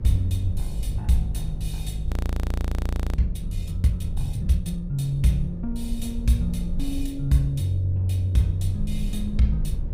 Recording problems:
mains hum; 50 Hz, harmonics up to 600 Hz, SNR 21 dB
low-frequency rumble; below 80 Hz, SNR 6 dB
frozen audio; at 2 s for 1 s

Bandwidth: 15.5 kHz